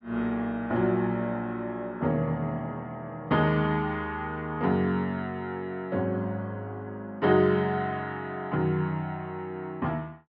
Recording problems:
low-pass filter; nothing above 5.5 kHz

